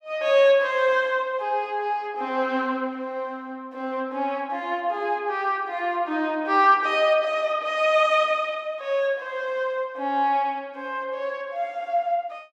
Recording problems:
none

